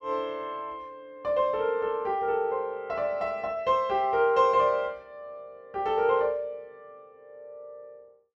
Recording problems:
none

